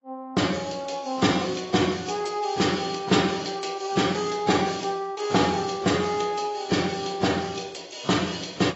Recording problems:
lossy codec; AAC, log-spectral distance 6 dB, nothing above 7.6 kHz

